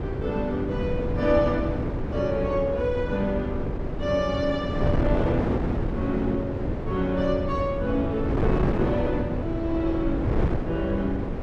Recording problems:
wind on the microphone; below 380 Hz, SNR 1 dB

